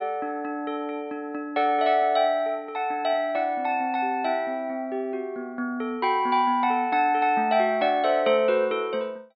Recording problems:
low-pass filter; nothing above 4.8 kHz

